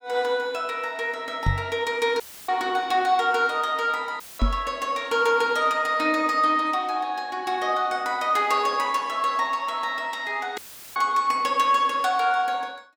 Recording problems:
microphone bump; at 1.5 s and at 4.5 s; peak +4 dB vs average level
dropout; at 2 s, at 4 s and at 11 s; filled with static

